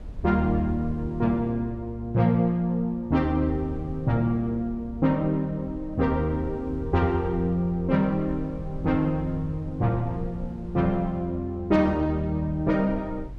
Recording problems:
wind on the microphone; below 98 Hz, SNR 15 dB

